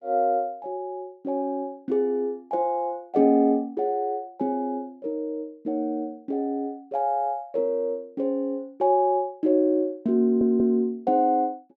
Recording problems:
stutter; at 10 s

